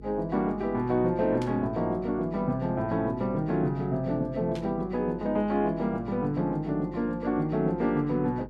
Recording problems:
hum; 50 Hz, harmonics up to 500 Hz, SNR 18 dB
burst of static; at 1.5 s and at 4.5 s; peak -11 dB vs average level

